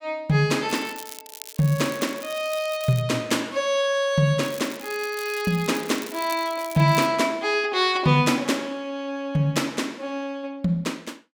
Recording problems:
crackle; from 0.5 to 3 s and from 4.5 to 7 s; loose cable, SNR 16 dB

